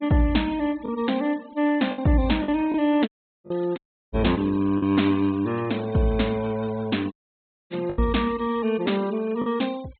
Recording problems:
treble missing; nothing above 4 kHz
noise reduction artefacts; signal-to-artefact ratio 21 dB
lost packets; 4% of the sound replaced, filled with the last packet
dropout; at 3 s, at 4 s and at 7 s for 0.5 s

